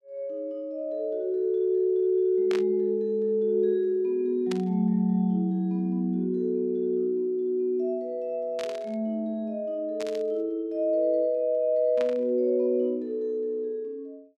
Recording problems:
burst of static; 5 times, first at 2.5 s; peak -7 dB vs average level

